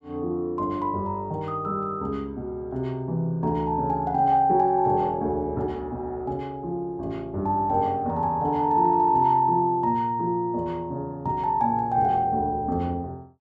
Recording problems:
none

